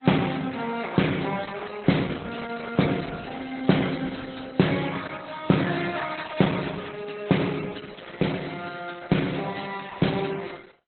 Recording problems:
codec artefacts; MP3, then Opus, log-spectral distance 9 dB, nothing above 4 kHz

